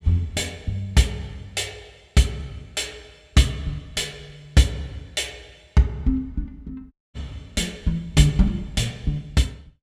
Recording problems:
audio cutting out; at 7 s

